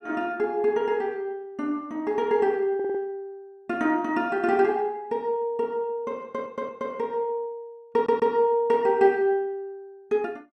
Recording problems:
stutter; at 3 s, at 6 s and at 8 s

